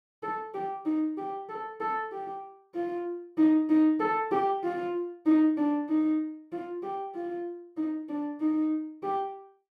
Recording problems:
none

